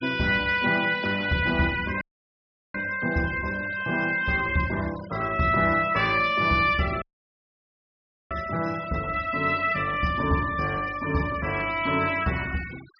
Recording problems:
low-pass filter; nothing above 5.5 kHz
noise reduction artefacts; signal-to-artefact ratio 18 dB
audio cutting out; at 2 s for 0.5 s and at 7 s for 1.5 s

